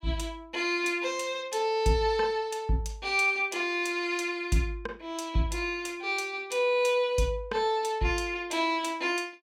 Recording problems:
none

